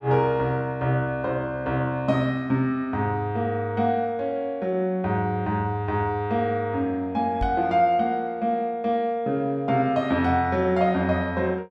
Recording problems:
microphone thump; at 7.5 s; peak -2 dB vs average level

